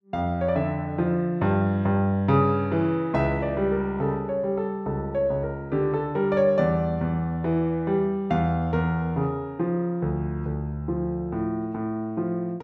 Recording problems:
none

